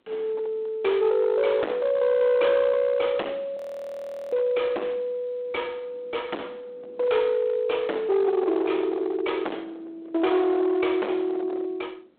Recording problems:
phone line; 280 Hz to 3.6 kHz, G.726
distorted audio; hard clipping, uneven, signal-to-distortion ratio 7 dB
wind noise; below 890 Hz, SNR 21 dB
frozen audio; at 3.5 s for 1 s

